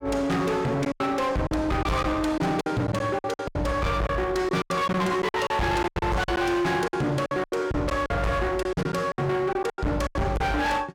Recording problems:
distorted audio; hard clipping, signal-to-distortion ratio 6 dB
packet loss; 13% of the sound replaced, filled with silence

